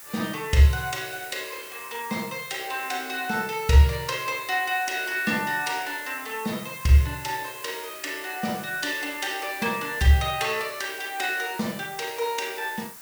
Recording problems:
background hiss; SNR 14 dB

